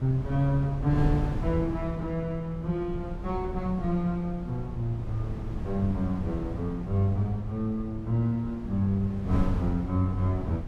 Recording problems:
wind on the microphone; below 150 Hz, SNR 7 dB

